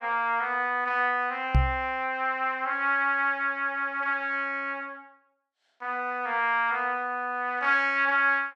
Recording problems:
microphone bump; at 1.5 s; peak +7 dB vs average level

